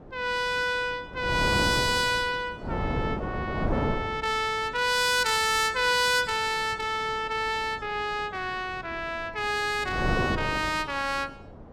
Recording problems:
wind on the microphone; below 530 Hz, SNR 6 dB

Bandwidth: 16.5 kHz